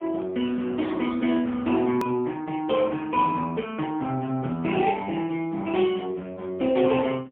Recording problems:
telephone audio; 190 Hz to 3.4 kHz, AMR-NB, then MP3
hard cut with a click; at 2 s

